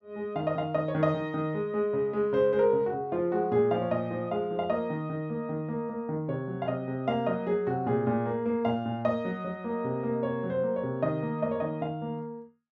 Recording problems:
none

